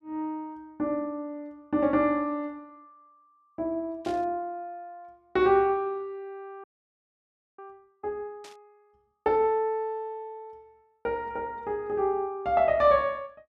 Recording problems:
static burst; at 4 s and at 8.5 s; peak -14 dB vs average level
frozen audio; at 6.5 s for 1 s

